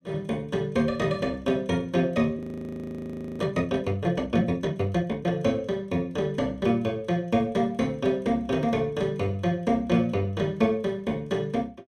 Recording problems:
frozen audio; at 2.5 s for 1 s

